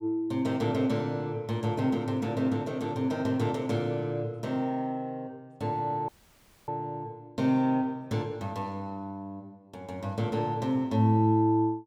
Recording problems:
audio cutting out; at 6 s for 0.5 s

